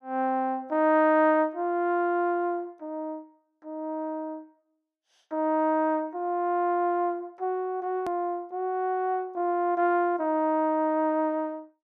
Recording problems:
click at an edit; at 8 s

